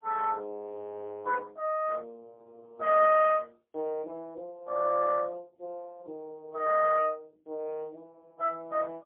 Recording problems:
telephone audio; 260 Hz to 3.7 kHz, AMR-NB, then MP3

